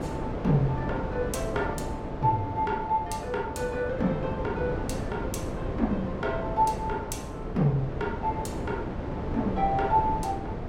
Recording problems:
wind noise; below 510 Hz, SNR 4 dB

